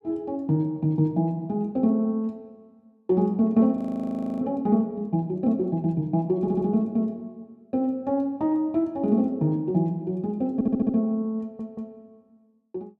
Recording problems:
audio freezing; at 4 s for 0.5 s
stutter; at 6.5 s and at 11 s

